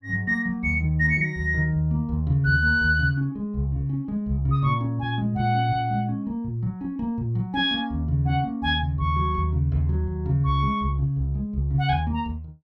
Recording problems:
none

